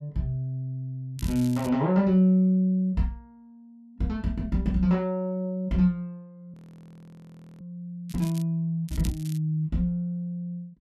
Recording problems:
crackling; at 1 s, at 8 s and at 9 s; loose cable, SNR 19 dB
frozen audio; at 6.5 s for 1 s

